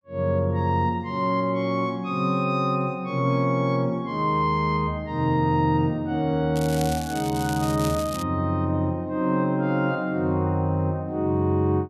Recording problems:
crackle; from 6.5 to 8 s; loose cable, SNR 13 dB

